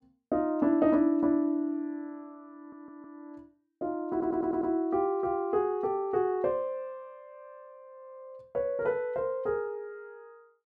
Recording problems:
audio stuttering; at 2.5 s and at 4 s

